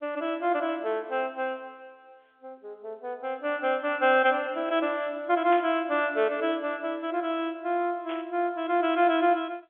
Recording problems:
phone line; 370 Hz to 3.5 kHz, G.711
burst of static; at 5.5 s and at 8 s; peak -8 dB vs average level

